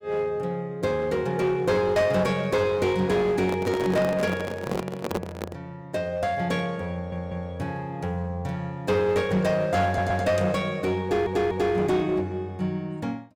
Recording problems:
distortion; hard clipping, uneven, signal-to-distortion ratio 10 dB
handling noise; from 3.5 to 5.5 s; peak +1 dB vs average level
audio stuttering; at 7 s, at 10 s and at 11 s

